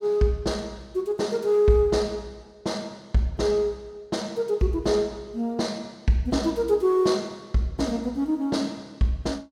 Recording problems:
none

